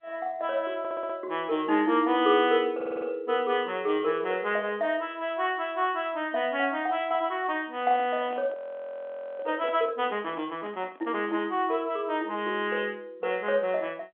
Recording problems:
telephone audio; 170 Hz to 3.4 kHz, G.711
audio stuttering; at 1 s and at 3 s
handling noise; from 7.5 to 12 s; peak -12 dB vs average level
audio freezing; at 8.5 s for 1 s

